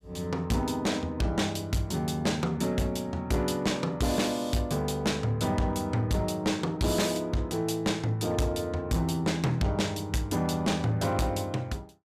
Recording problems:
distortion; hard clipping, signal-to-distortion ratio 10 dB

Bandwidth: 15 kHz